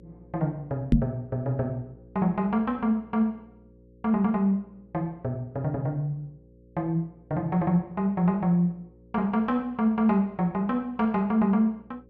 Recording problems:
hum; 60 Hz, harmonics up to 540 Hz, SNR 27 dB
microphone bump; at 1 s; peak +9 dB vs average level

